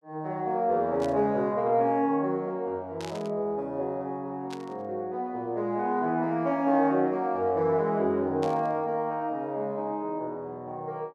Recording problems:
static burst; 4 times, first at 1 s; peak -9 dB vs average level

